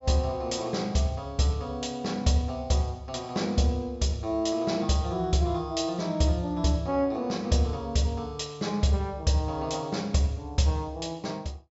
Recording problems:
treble missing; nothing above 8 kHz

